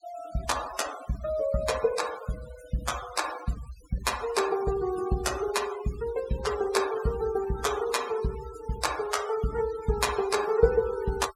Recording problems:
denoising artefacts; signal-to-artefact ratio 13 dB

